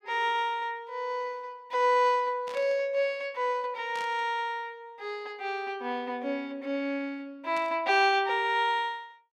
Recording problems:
burst of static; at 2.5 s, at 4 s and at 7.5 s; peak -11 dB vs average level

